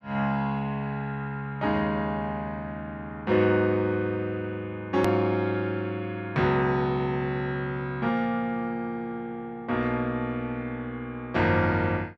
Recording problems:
edit click; at 5 s

